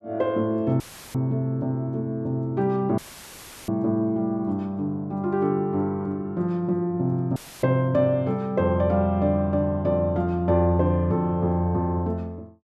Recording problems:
dropout; at 1 s, at 3 s for 0.5 s and at 7.5 s; filled with static

